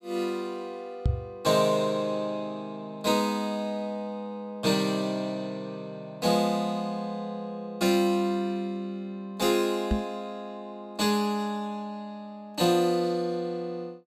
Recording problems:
knock on the microphone; at 1 s and at 10 s; peak +6 dB vs average level

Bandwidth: 15 kHz